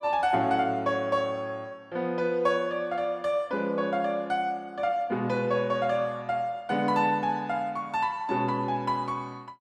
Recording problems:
none

